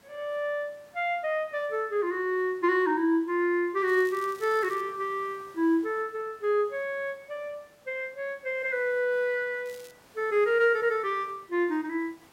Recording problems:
background hiss; slope -4 dB per octave, SNR 28 dB
crackle; at 4 s and at 9.5 s; loose cable, SNR 23 dB

